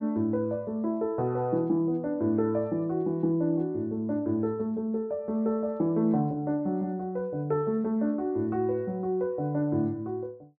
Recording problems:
none

